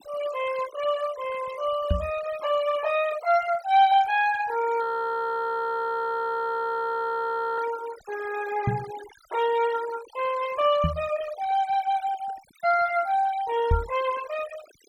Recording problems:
denoising artefacts; signal-to-artefact ratio 16 dB
knock on the microphone; 4 times, first at 2 s; peak +5 dB vs average level
frozen audio; at 5 s for 3 s

